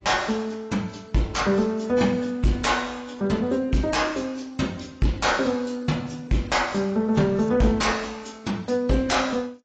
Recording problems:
lossy codec; AAC, log-spectral distance 4 dB, nothing above 7.6 kHz
distorted audio; soft clipping, signal-to-distortion ratio 10 dB

